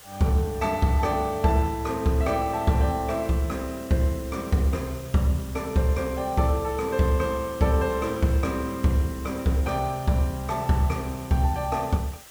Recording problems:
background hiss; slope 0 dB per octave, SNR 19 dB

